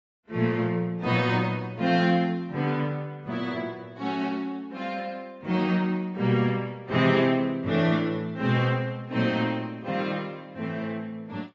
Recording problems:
lossy codec; AAC, log-spectral distance 2 dB, nothing above 7.3 kHz

